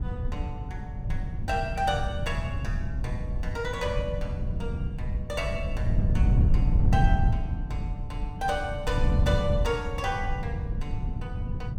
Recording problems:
wind on the microphone; below 120 Hz, SNR -3 dB

